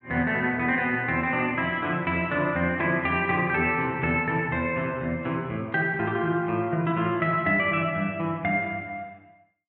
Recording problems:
none

